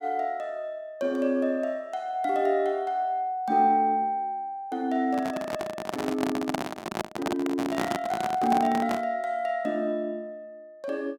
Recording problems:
microphone handling noise; from 5 to 9 s; peak +3 dB vs average level

